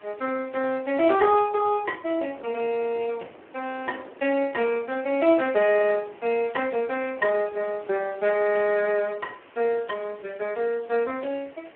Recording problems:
telephone audio; 280 Hz to 3 kHz, Speex
background hiss; SNR 28 dB
wind on the microphone; below 800 Hz, SNR 24 dB

